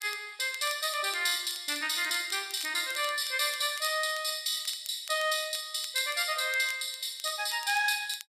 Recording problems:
crackling; vinyl, SNR 17 dB

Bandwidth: 14.5 kHz